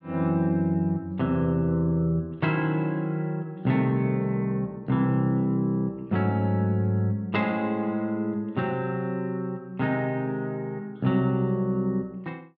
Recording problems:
none

